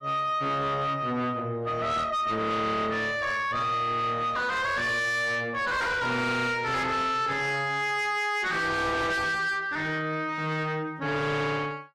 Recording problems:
lossy codec; AAC, log-spectral distance 2 dB, nothing above 13.7 kHz
distortion; soft clipping, signal-to-distortion ratio 6 dB

